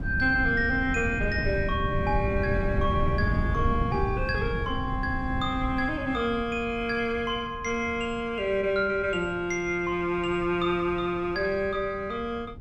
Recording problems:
wind on the microphone; below 160 Hz, SNR 5 dB

